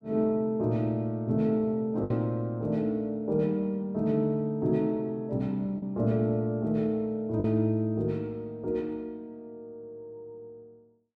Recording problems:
packet loss; 1.3% of the sound replaced, filled with the last packet

